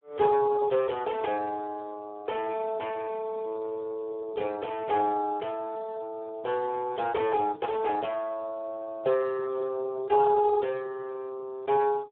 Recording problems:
phone line; 340 Hz to 2.3 kHz, Speex

